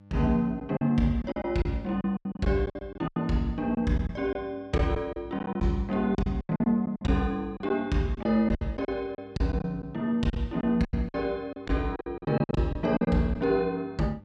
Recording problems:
mains hum; 50 Hz, harmonics up to 900 Hz, SNR 24 dB
lost packets; 13% of the sound replaced, filled with silence

